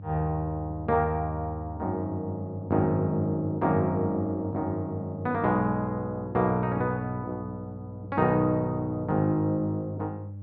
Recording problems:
electrical hum; 50 Hz, harmonics up to 500 Hz, SNR 13 dB

